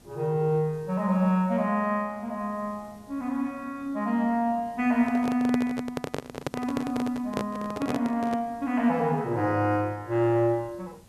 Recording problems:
background hiss; SNR 27 dB
handling noise; from 5 to 8.5 s; peak 0 dB vs average level

